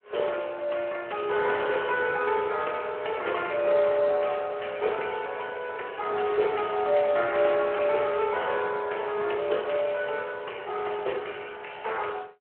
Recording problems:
telephone audio; 370 Hz to 3.1 kHz, Speex

